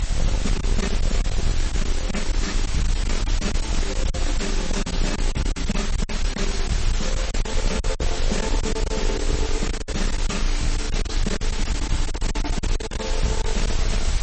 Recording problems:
lossy compression; MP3, log-spectral distance 9 dB, nothing above 8.2 kHz
distortion; soft clipping, signal-to-distortion ratio 7 dB
background hiss; slope -1 dB per octave, SNR 4 dB
rumble; below 50 Hz, strongest tone 26 Hz, SNR -1 dB
packet loss; 11% of the sound replaced, filled with silence

